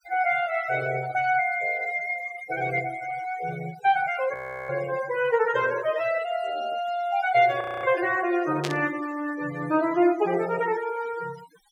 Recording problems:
noise reduction artefacts; signal-to-artefact ratio 16 dB
frozen audio; at 4.5 s and at 7.5 s
burst of static; at 8.5 s; peak -1 dB vs average level

